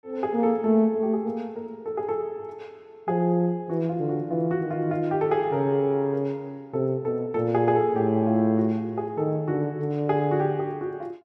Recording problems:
none

